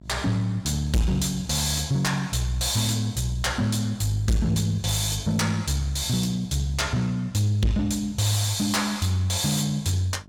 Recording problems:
distortion; soft clipping, signal-to-distortion ratio 7 dB
hum; 50 Hz, harmonics up to 1 kHz, SNR 25 dB

